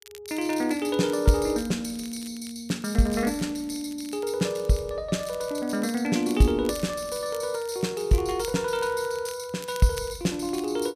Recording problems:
crackle; vinyl, SNR 19 dB

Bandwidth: 14.5 kHz